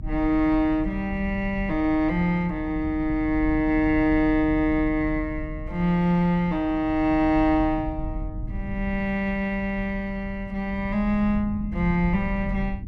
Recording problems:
rumble; below 98 Hz, strongest tone 38 Hz, SNR 11 dB

